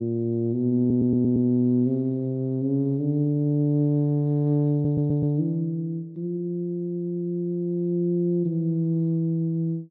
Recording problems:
audio stuttering; at 1 s and at 4.5 s

